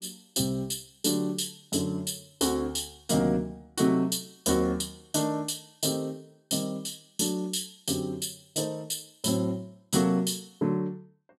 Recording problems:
none

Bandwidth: 13 kHz